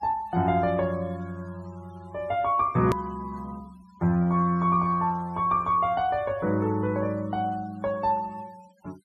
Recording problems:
noise reduction artefacts; signal-to-artefact ratio 27 dB
hard cut with a click; at 3 s

